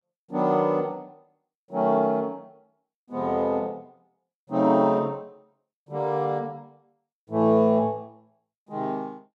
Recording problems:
none

